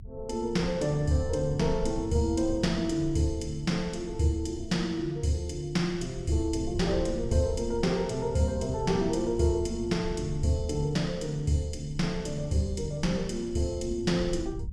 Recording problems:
rumble; below 94 Hz, strongest tone 22 Hz, SNR 13 dB

